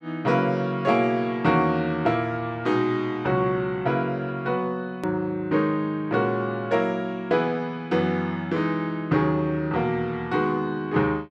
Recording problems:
hard cut with a click; at 5 s

